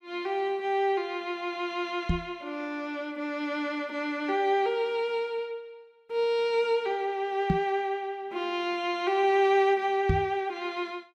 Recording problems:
microphone thump; at 2 s, at 7.5 s and at 10 s; peak +6 dB vs average level

